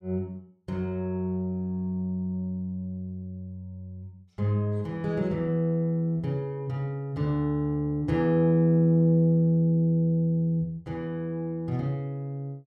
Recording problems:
none

